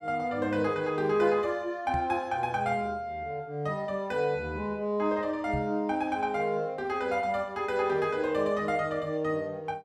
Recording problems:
microphone bump; at 2 s and at 5.5 s; peak -2 dB vs average level

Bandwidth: 15.5 kHz